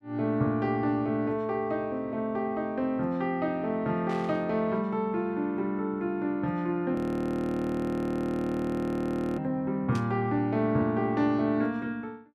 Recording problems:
burst of static; at 4 s and at 10 s; peak -10 dB vs average level
audio freezing; at 7 s for 2.5 s

